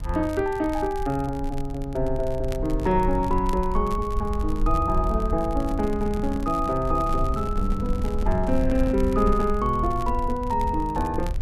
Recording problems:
low-frequency rumble; below 62 Hz, SNR 6 dB
crackling; vinyl, SNR 23 dB
microphone handling noise; from 5.5 to 9.5 s; peak -4 dB vs average level

